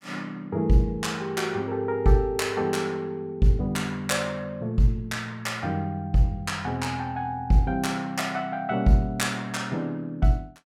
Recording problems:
none

